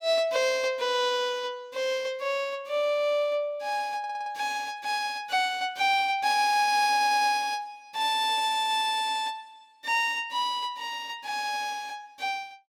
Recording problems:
audio stuttering; at 4 s and at 7 s

